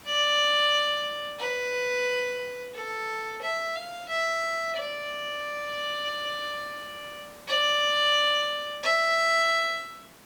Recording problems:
hiss; slope -4 dB per octave, SNR 23 dB

